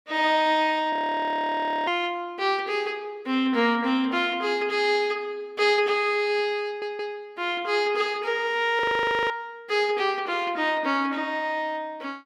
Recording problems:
audio freezing; at 1 s for 1 s and at 9 s for 0.5 s
stutter; at 6.5 s

